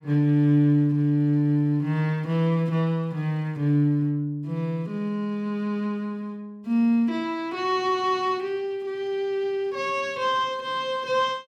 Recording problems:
none

